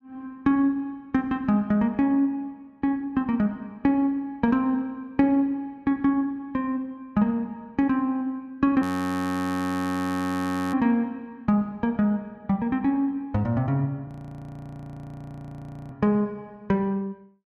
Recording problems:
frozen audio; at 9 s for 2 s and at 14 s for 2 s

